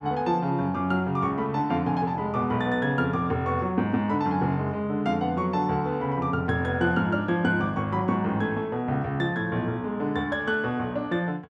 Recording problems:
none

